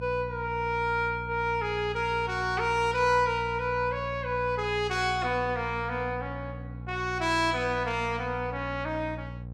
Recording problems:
hum; 60 Hz, harmonics up to 780 Hz, SNR 11 dB

